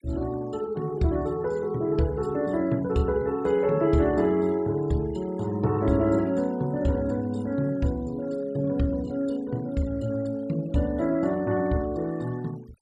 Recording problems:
denoising artefacts; signal-to-artefact ratio 24 dB

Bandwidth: 13.5 kHz